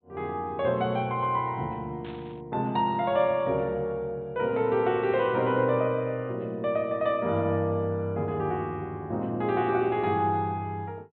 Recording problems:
treble cut off; nothing above 4 kHz
burst of static; at 2 s; peak -16 dB vs average level

